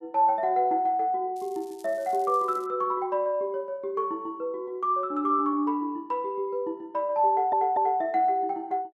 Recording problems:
crackle; from 1.5 to 2.5 s; loose cable, SNR 27 dB
audio stuttering; at 7.5 s

